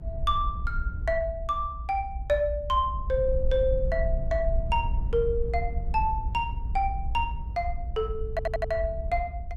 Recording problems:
low-frequency rumble; below 64 Hz, SNR 4 dB
stutter; at 8.5 s

